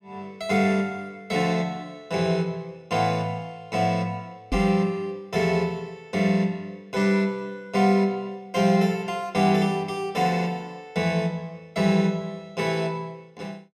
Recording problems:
knock on the microphone; at 4.5 s; peak 0 dB vs average level

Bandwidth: 15 kHz